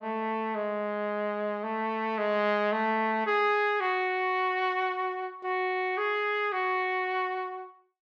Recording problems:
none

